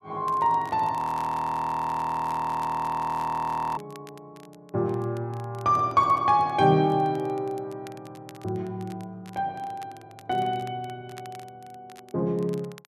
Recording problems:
crackling; vinyl, SNR 27 dB
frozen audio; at 1 s for 3 s

